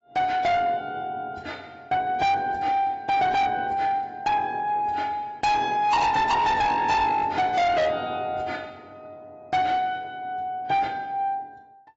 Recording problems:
codec artefacts; AAC, log-spectral distance 2 dB, nothing above 7.6 kHz
distorted audio; soft clipping, signal-to-distortion ratio 7 dB

